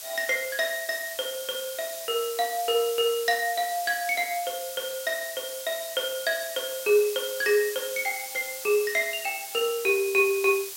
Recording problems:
hiss; slope +2 dB per octave, SNR 9 dB

